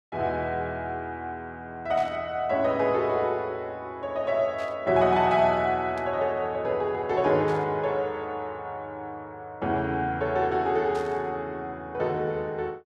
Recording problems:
burst of static; 5 times, first at 2 s; peak -14 dB vs average level

